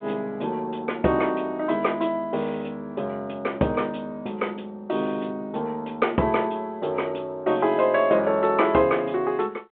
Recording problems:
phone line; 220 Hz to 3.4 kHz, G.726

